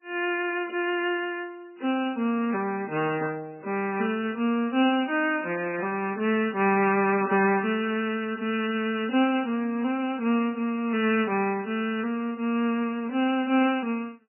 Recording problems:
lossy compression; MP3, log-spectral distance 3 dB, nothing above 2.8 kHz

